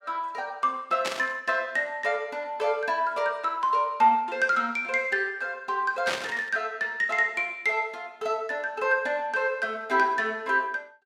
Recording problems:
burst of static; at 1 s and at 6 s; peak 0 dB vs average level

